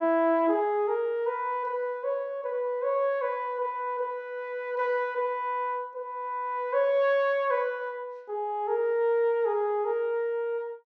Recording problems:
none

